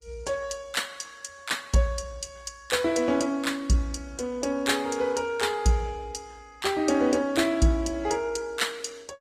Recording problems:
lossy codec; Opus, log-spectral distance 4 dB, nothing above 15.1 kHz

